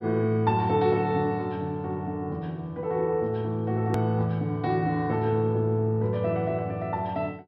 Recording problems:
low-pass filter; nothing above 5.5 kHz
edit click; at 4 s

